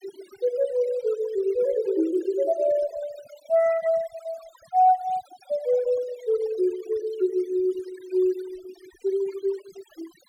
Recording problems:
denoising artefacts; signal-to-artefact ratio 20 dB

